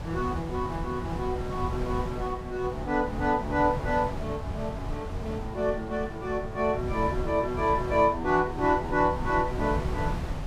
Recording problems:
wind noise; below 180 Hz, SNR 7 dB

